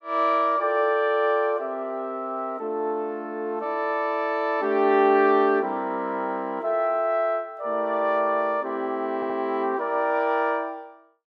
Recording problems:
audio stuttering; at 9 s

